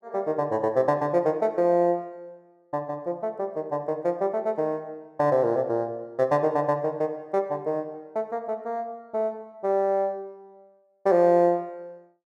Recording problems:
none

